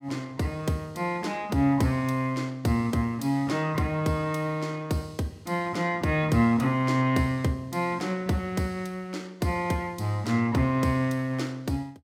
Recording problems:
none

